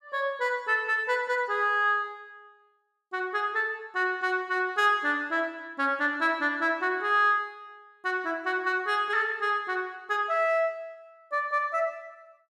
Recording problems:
none

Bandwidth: 13.5 kHz